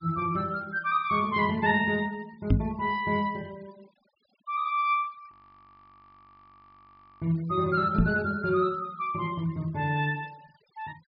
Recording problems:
treble missing; nothing above 5.5 kHz
noise reduction artefacts; signal-to-artefact ratio 28 dB
knock on the microphone; at 2.5 s and at 8 s; peak +8 dB vs average level
frozen audio; at 5.5 s for 2 s

